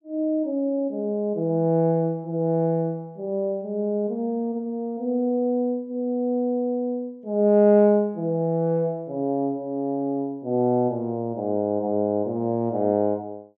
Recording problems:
none

